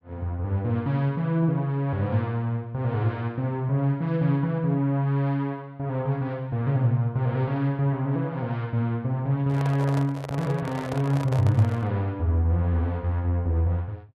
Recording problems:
microphone handling noise; from 9.5 to 12 s; peak -5 dB vs average level

